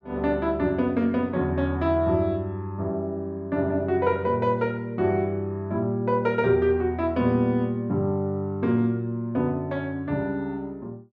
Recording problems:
none

